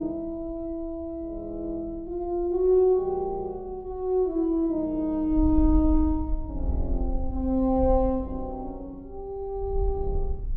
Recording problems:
wind noise; below 58 Hz, SNR 6 dB

